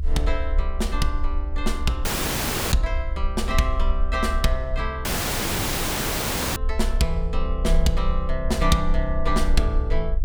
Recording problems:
rumble; below 60 Hz, strongest tone 20 Hz, SNR 1 dB
dropout; at 2 s for 0.5 s and at 5 s for 1.5 s

